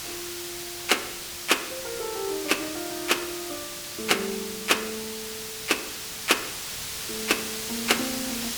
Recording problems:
hiss; slope +1 dB per octave, SNR 5 dB

